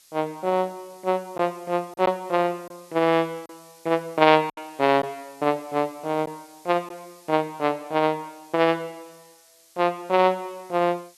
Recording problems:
background hiss; slope +3 dB per octave, SNR 27 dB
packet loss; 2% of the sound replaced, filled with silence

